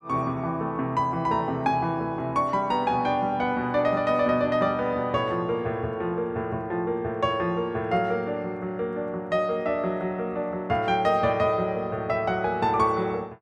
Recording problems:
none

